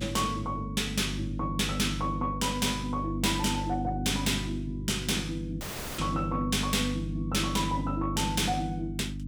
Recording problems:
distortion; soft clipping, signal-to-distortion ratio 11 dB
hum; 50 Hz, harmonics up to 300 Hz, SNR 5 dB
audio cutting out; at 5.5 s

